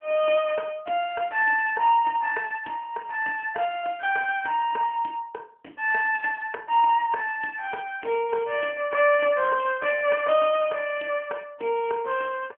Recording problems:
telephone audio; 280 Hz to 3.2 kHz, AMR-NB

